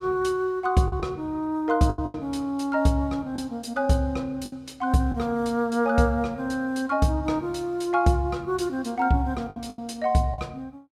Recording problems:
lost packets; 5% of the sound replaced, filled with the last packet

